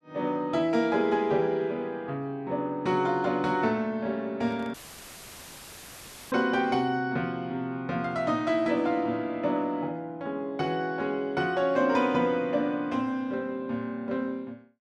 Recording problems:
handling noise; at 4.5 s; peak -17 dB vs average level
audio cutting out; at 4.5 s for 1.5 s; filled with static

